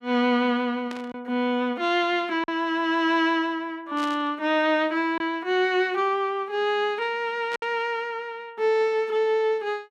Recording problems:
packet loss; 1.4% of the sound replaced, filled with silence
burst of static; at 1 s, at 4 s and at 7.5 s; peak -9 dB vs average level

